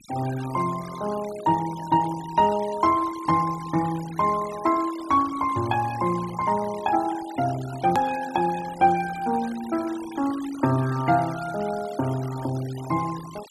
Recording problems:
denoising artefacts; signal-to-artefact ratio 17 dB
click at an edit; at 8 s

